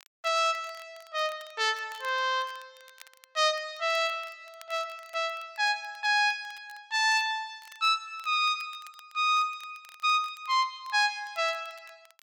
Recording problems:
crackle; vinyl, SNR 27 dB

